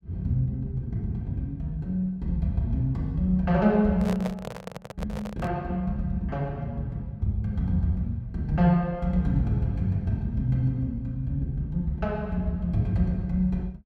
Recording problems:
microphone handling noise; from 4 to 5.5 s; peak -3 dB vs average level

